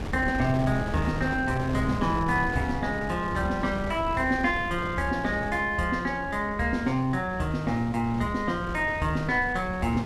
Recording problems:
wind on the microphone; below 380 Hz, SNR 9 dB

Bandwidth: 14 kHz